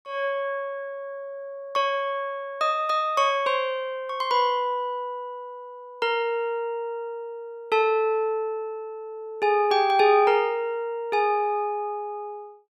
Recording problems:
none

